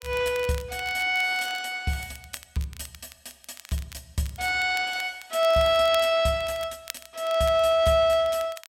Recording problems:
crackle; vinyl, SNR 20 dB

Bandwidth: 16 kHz